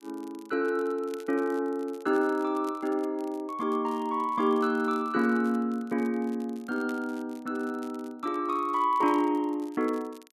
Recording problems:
crackling; vinyl, SNR 27 dB

